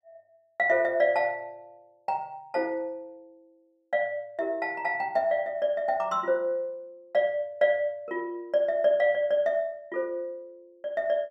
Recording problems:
none

